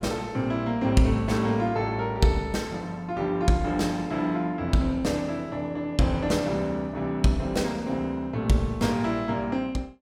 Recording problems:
none

